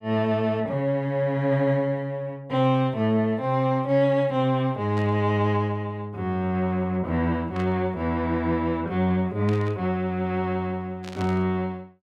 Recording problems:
burst of static; 4 times, first at 5 s; peak -12 dB vs average level

